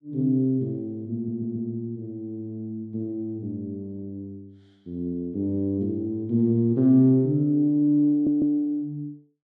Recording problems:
stutter; at 1 s and at 8 s

